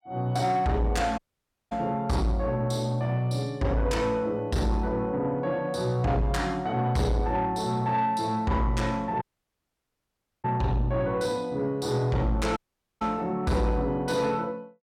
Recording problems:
distortion; soft clipping, signal-to-distortion ratio 12 dB
dropout; at 1 s for 0.5 s, at 9 s for 1 s and at 13 s

